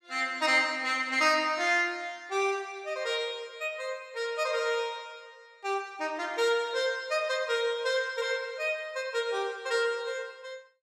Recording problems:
none

